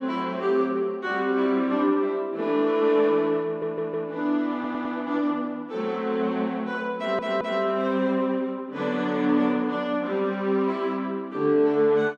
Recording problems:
stutter; at 3.5 s, at 4.5 s and at 7 s

